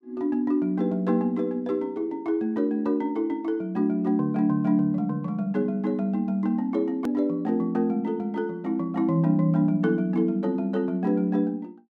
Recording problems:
hard cut with a click; at 7 s

